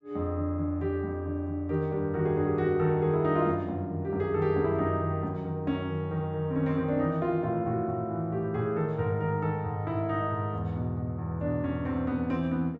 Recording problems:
none

